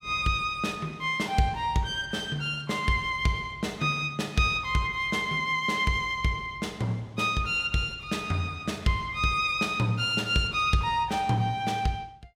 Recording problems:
none

